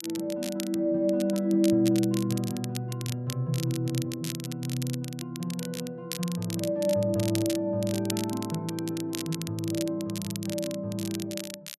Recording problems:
crackle; vinyl, SNR 10 dB

